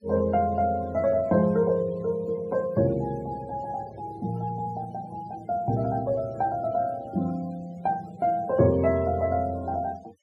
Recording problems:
noise reduction artefacts; signal-to-artefact ratio 23 dB

